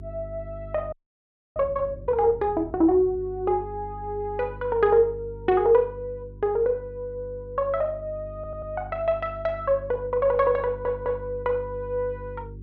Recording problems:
hum; 50 Hz, harmonics up to 400 Hz, SNR 16 dB
audio freezing; at 1 s for 0.5 s
stutter; at 8.5 s and at 11 s

